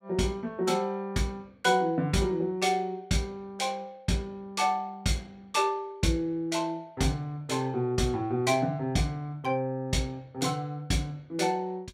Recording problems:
none

